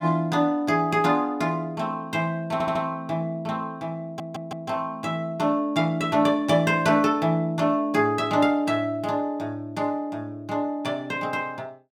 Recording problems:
audio stuttering; at 2.5 s and at 4 s

